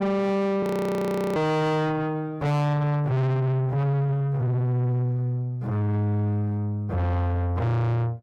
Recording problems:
distortion; soft clipping, signal-to-distortion ratio 7 dB
frozen audio; at 0.5 s for 0.5 s

